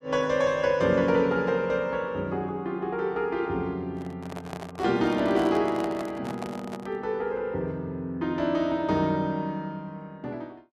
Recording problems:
handling noise; from 4 to 7 s; peak -5 dB vs average level

